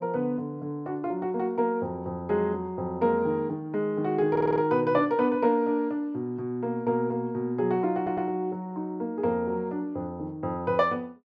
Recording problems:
audio stuttering; at 4.5 s and at 8 s

